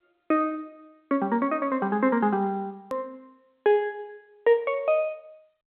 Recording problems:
phone line; 260 Hz to 3.7 kHz, G.711
hard cut with a click; at 3 s

